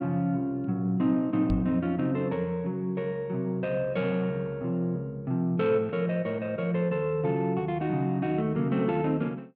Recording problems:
microphone thump; at 1.5 s; peak +1 dB vs average level

